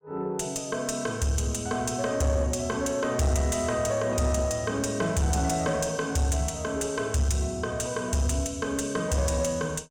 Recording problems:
distortion; soft clipping, signal-to-distortion ratio 10 dB

